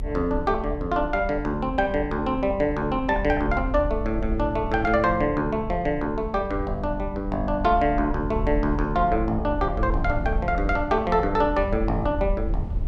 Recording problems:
low-frequency rumble; below 70 Hz, strongest tone 42 Hz, SNR 8 dB

